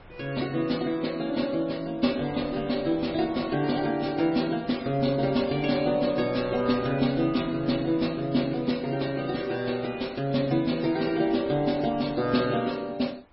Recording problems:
codec artefacts; MP3, log-spectral distance 4 dB, nothing above 4.9 kHz
wind noise; below 940 Hz, SNR 24 dB

